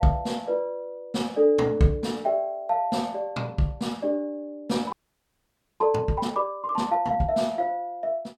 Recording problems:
audio freezing; at 5 s for 1 s

